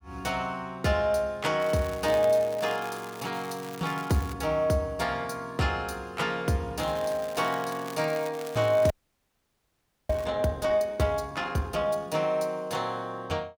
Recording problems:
crackle; from 1.5 to 4.5 s and from 7 to 10 s; loose cable, SNR 17 dB
frozen audio; at 9 s for 1 s

